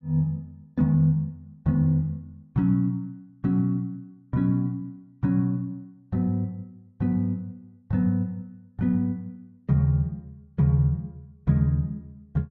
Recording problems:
none

